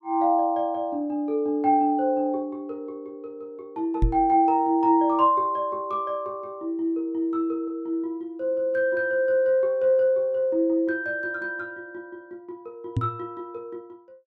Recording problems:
knock on the microphone; at 4 s and at 13 s; peak +5 dB vs average level

